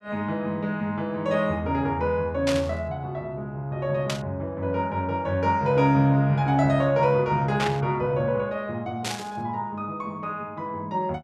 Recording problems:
burst of static; 4 times, first at 2.5 s; peak 0 dB vs average level

